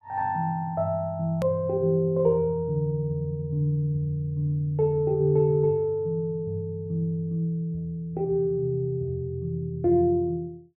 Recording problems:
edit click; at 1.5 s

